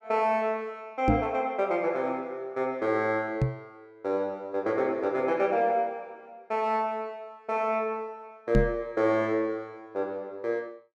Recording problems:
microphone thump; at 1 s, at 3.5 s and at 8.5 s; peak +8 dB vs average level

